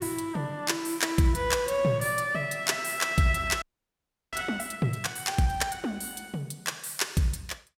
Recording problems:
audio freezing; at 3.5 s for 0.5 s

